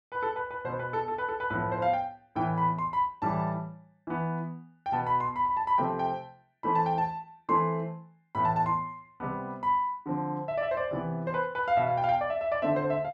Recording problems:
none

